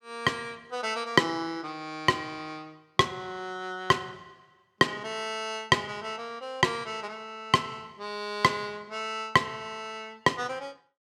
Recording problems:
none

